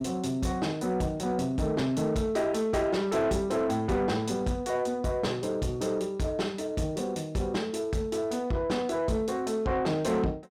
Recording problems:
distorted audio; soft clipping, signal-to-distortion ratio 12 dB

